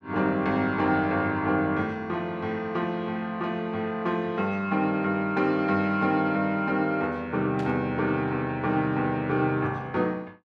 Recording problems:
static burst; at 7.5 s; peak -12 dB vs average level

